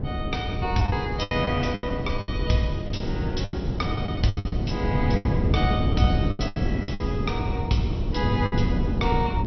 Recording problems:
lossy compression; MP2, log-spectral distance 2 dB, nothing above 5.8 kHz
wind on the microphone; below 230 Hz, SNR -1 dB
lost packets; 12% of the sound replaced, filled with the last packet

